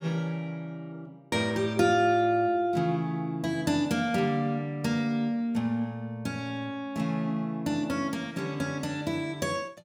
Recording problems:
none

